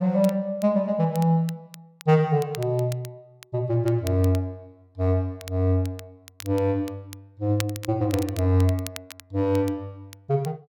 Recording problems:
crackling; vinyl, SNR 19 dB

